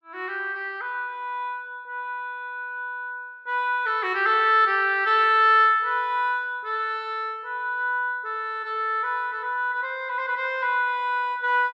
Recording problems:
none

